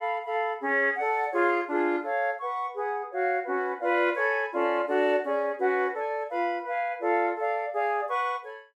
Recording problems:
none

